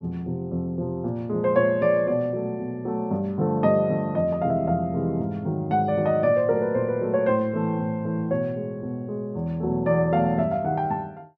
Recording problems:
none

